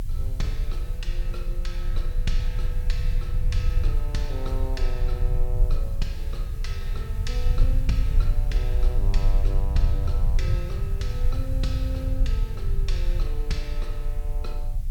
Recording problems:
hiss; slope -1 dB per octave, SNR 16 dB
low-frequency rumble; below 56 Hz, strongest tone 24 Hz, SNR -10 dB

